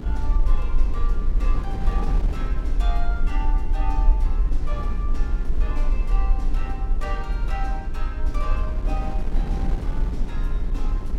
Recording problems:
hum; 60 Hz, harmonics up to 420 Hz, SNR 5 dB
rumble; below 42 Hz, strongest tone 20 Hz, SNR -10 dB
wind on the microphone; below 250 Hz, SNR -1 dB

